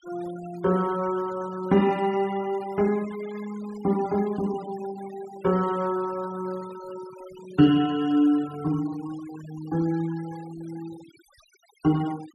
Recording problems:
noise reduction artefacts; signal-to-artefact ratio 20 dB

